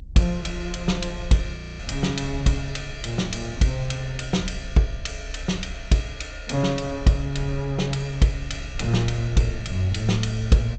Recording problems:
codec artefacts; G.722, log-spectral distance 3 dB, nothing above 8 kHz
low-frequency rumble; below 70 Hz, strongest tone 40 Hz, SNR 12 dB
frozen audio; at 1.5 s

